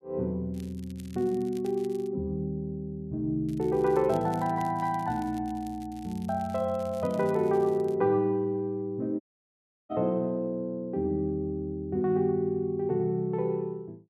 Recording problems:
crackling; from 0.5 to 2 s and from 3.5 to 8 s; loose cable, SNR 25 dB
dropout; at 9 s for 0.5 s

